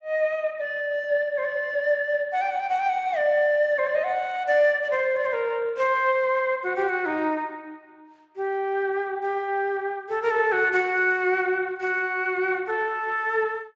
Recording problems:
codec artefacts; Speex, log-spectral distance 2 dB

